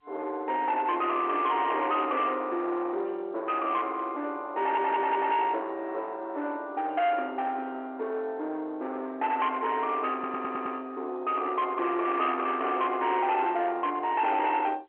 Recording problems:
phone line; 370 Hz to 3.6 kHz, G.711
distortion; soft clipping, signal-to-distortion ratio 11 dB
stutter; at 4.5 s and at 10 s

